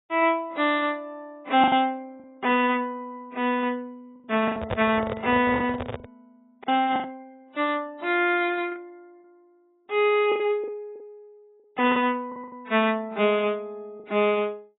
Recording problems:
lossy codec; AAC, log-spectral distance 2 dB, nothing above 3.5 kHz
lost packets; 7% of the sound replaced, filled with the last packet
microphone handling noise; from 4.5 to 6 s; peak 0 dB vs average level

